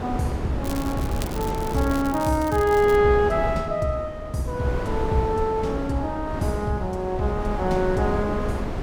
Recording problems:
wind on the microphone; below 440 Hz, SNR 6 dB
crackle; from 0.5 to 3 s; loose cable, SNR 15 dB

